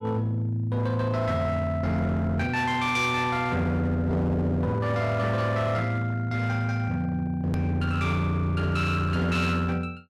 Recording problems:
distortion; hard clipping, signal-to-distortion ratio 11 dB
edit click; at 7.5 s

